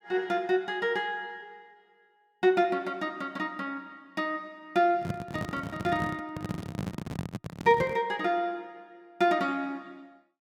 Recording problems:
handling noise; from 5 to 8 s; peak +1 dB vs average level

